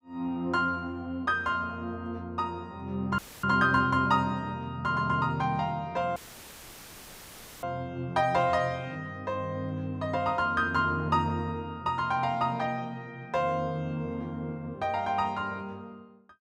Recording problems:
audio cutting out; at 3 s and at 6 s for 1.5 s; filled with static

